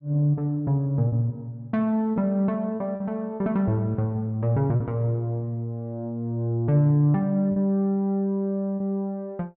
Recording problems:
lost packets; 3% of the sound replaced, filled with repeated pitch periods

